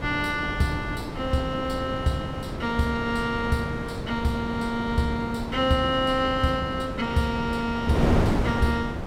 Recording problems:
wind on the microphone; below 500 Hz, SNR 4 dB

